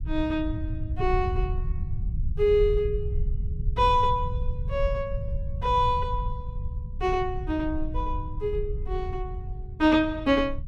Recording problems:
low-frequency rumble; below 84 Hz, SNR 6 dB

